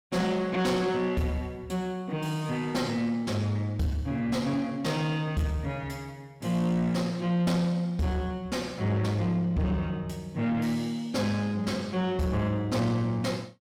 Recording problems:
distorted audio; soft clipping, signal-to-distortion ratio 11 dB

